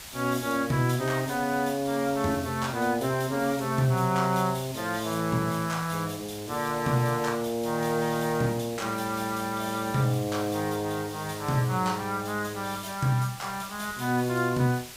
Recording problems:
hiss; slope 0 dB per octave, SNR 14 dB

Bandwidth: 15.5 kHz